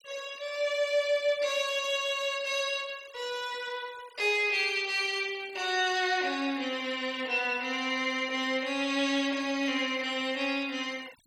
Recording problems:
noise reduction artefacts; signal-to-artefact ratio 21 dB

